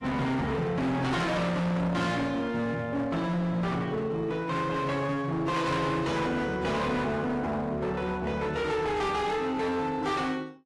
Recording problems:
codec artefacts; AAC, log-spectral distance 2 dB, nothing above 11.3 kHz
distortion; hard clipping, signal-to-distortion ratio 7 dB

